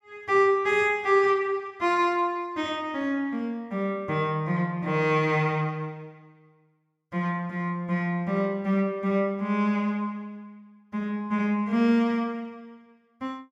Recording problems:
none

